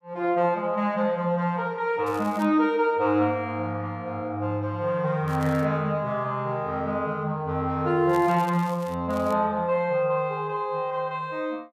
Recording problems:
crackling; 4 times, first at 2 s; loose cable, SNR 23 dB

